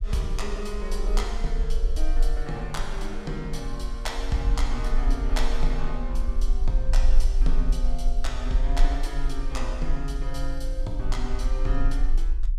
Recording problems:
rumble; below 38 Hz, strongest tone 22 Hz, SNR -4 dB

